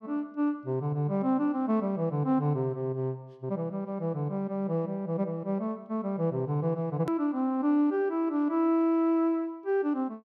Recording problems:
hard cut with a click; at 7 s

